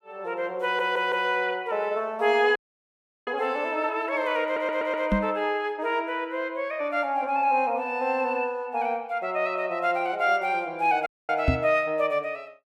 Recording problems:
stutter; at 0.5 s and at 4.5 s
dropout; at 2.5 s for 0.5 s and at 11 s
microphone bump; at 5 s and at 11 s; peak +6 dB vs average level

